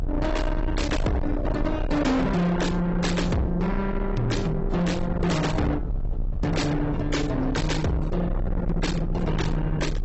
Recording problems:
codec artefacts; AAC, log-spectral distance 2 dB, nothing above 7.8 kHz
distorted audio; soft clipping, signal-to-distortion ratio 6 dB
rumble; below 260 Hz, strongest tone 30 Hz, SNR 4 dB

